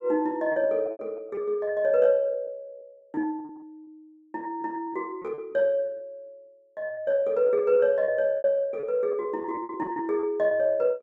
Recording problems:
lost packets; 15% of the sound replaced, filled with repeated pitch periods

